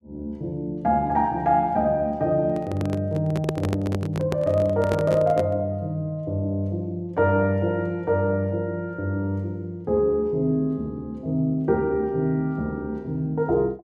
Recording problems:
handling noise; from 2.5 to 5.5 s; peak +2 dB vs average level

